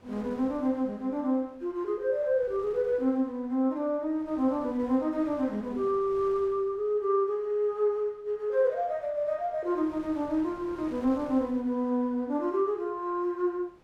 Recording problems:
wind on the microphone; below 1.1 kHz, SNR 23 dB

